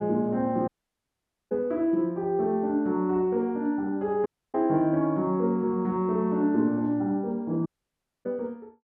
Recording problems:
audio cutting out; at 0.5 s for 1 s, at 4.5 s and at 7.5 s for 0.5 s

